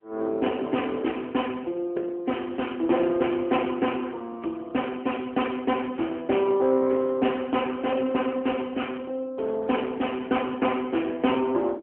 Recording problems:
phone line; 240 Hz to 3.2 kHz, AMR-NB

